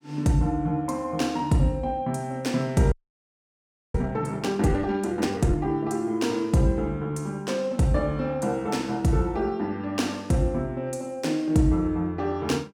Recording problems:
audio freezing; at 3 s for 1 s

